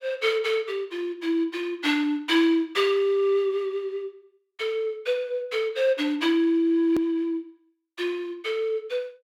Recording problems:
edit click; at 7 s

